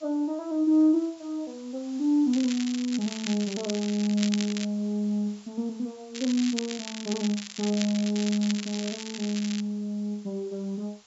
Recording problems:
low-pass filter; nothing above 8 kHz
background hiss; SNR 24 dB
crackle; from 2.5 to 4.5 s and from 6 to 9.5 s; loose cable, SNR 9 dB

